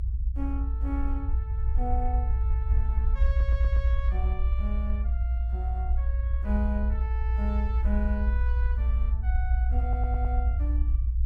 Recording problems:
low-frequency rumble; below 62 Hz, strongest tone 60 Hz, SNR -10 dB
stutter; at 3.5 s and at 10 s

